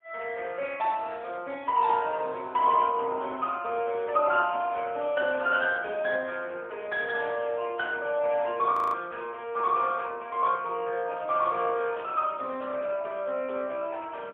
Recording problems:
phone line; 260 Hz to 3.4 kHz, AMR-NB, then MP3
audio freezing; at 8.5 s
burst of static; at 12 s; peak -14 dB vs average level

